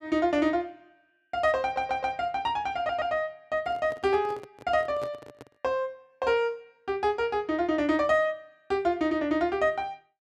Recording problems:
audio stuttering; at 1.5 s and at 3 s
handling noise; from 3.5 to 5.5 s; peak -8 dB vs average level

